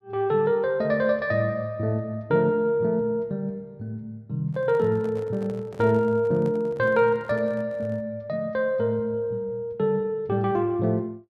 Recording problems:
handling noise; from 4.5 to 8 s; peak -11 dB vs average level

